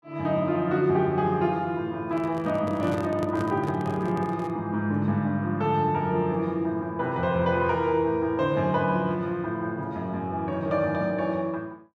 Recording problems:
handling noise; from 2 to 4.5 s; peak -4 dB vs average level

